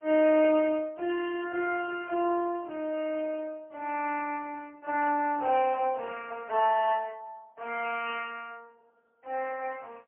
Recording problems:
phone line; 260 Hz to 3.1 kHz, AMR-NB, then MP3
burst of static; 4 times, first at 2 s; peak -13 dB vs average level

